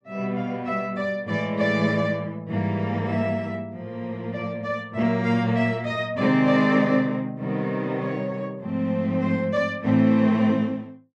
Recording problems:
none

